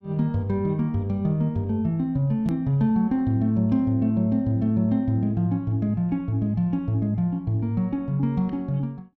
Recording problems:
hard cut with a click; at 2.5 s

